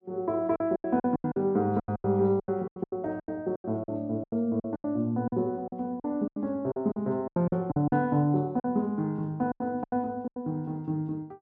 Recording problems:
packet loss; 16% of the sound replaced, filled with silence

